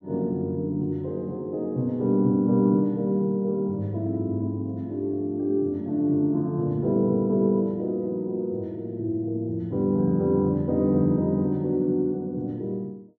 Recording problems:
none

